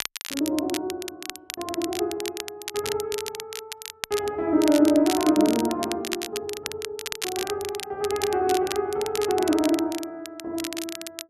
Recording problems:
crackling; vinyl, SNR 9 dB

